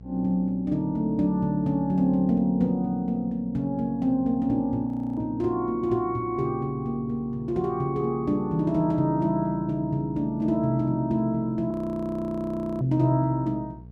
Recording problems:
hum; 60 Hz, harmonics up to 480 Hz, SNR 21 dB
frozen audio; at 5 s and at 12 s for 1 s

